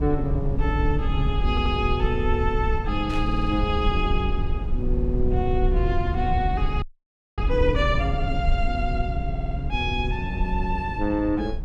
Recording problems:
rumble; below 76 Hz, SNR 1 dB
stutter; 4 times, first at 1.5 s
static burst; at 3 s; peak -10 dB vs average level
frozen audio; at 7 s for 0.5 s

